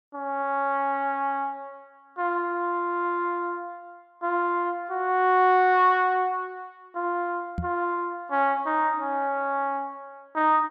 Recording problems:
knock on the microphone; at 7.5 s; peak -2 dB vs average level

